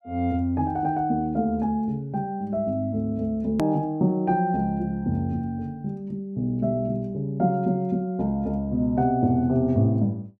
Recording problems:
edit click; at 3.5 s

